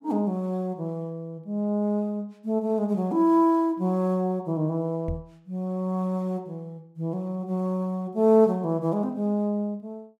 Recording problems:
microphone thump; at 5 s; peak -2 dB vs average level

